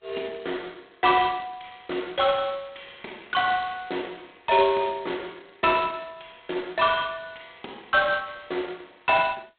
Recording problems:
phone line; 280 Hz to 3.7 kHz, G.726

